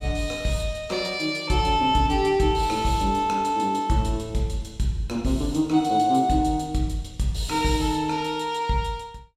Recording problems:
none

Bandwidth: 16 kHz